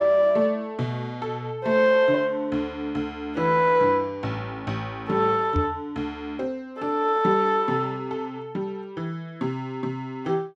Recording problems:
knock on the microphone; at 5.5 s; peak +2 dB vs average level

